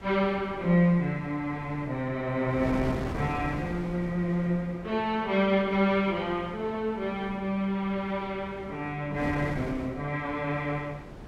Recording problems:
wind on the microphone; below 570 Hz, SNR 12 dB

